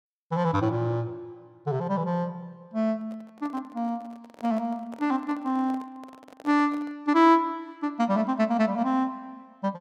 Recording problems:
handling noise; from 3 to 7 s; peak -13 dB vs average level

